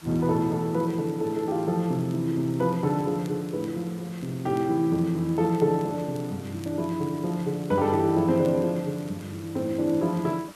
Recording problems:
background hiss; SNR 22 dB
crackling; vinyl, SNR 30 dB

